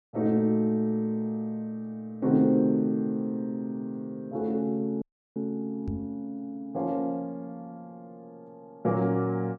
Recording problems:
dropout; at 5 s
microphone bump; at 6 s; peak -1 dB vs average level

